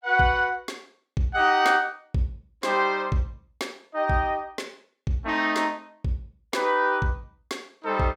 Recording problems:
none

